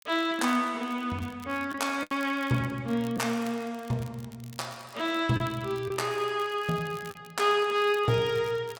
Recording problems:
crackling; vinyl, SNR 22 dB
lost packets; 2% of the sound replaced, filled with the last packet

